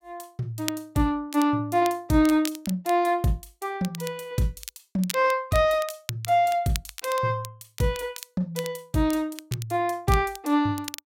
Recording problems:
crackle; vinyl, SNR 14 dB

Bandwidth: 16 kHz